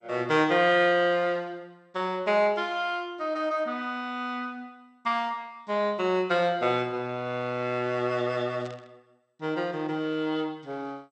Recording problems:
lossy compression; MP2, log-spectral distance 2 dB
static burst; at 8.5 s; peak -15 dB vs average level

